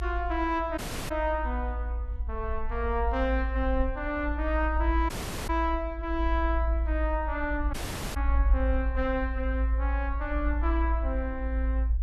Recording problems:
rumble; below 58 Hz, strongest tone 56 Hz, SNR 0 dB
audio cutting out; at 1 s, at 5 s and at 7.5 s

